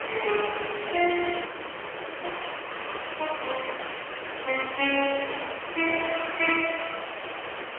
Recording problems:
phone line; 300 Hz to 3.2 kHz, AMR-NB, then MP3
hiss; SNR 6 dB
audio freezing; at 1.5 s for 1 s

